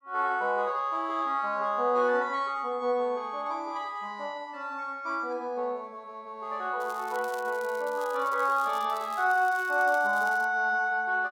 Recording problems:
crackle; from 7 to 9 s and from 9 to 10 s; loose cable, SNR 21 dB

